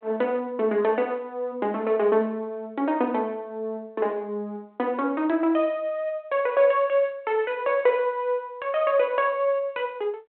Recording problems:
telephone audio; 260 Hz to 3.3 kHz, G.726

